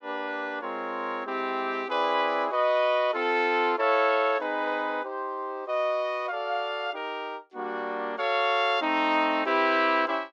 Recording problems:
none

